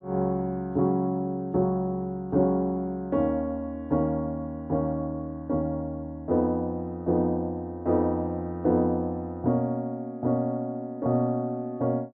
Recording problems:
none

